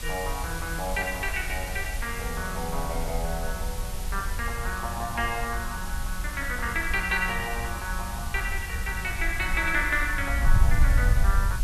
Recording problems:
background hiss; slope 0 dB per octave, SNR 9 dB
wind noise; below 62 Hz, SNR 2 dB

